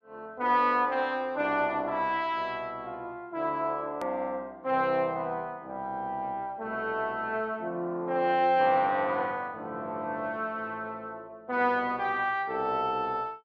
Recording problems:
click at an edit; at 4 s

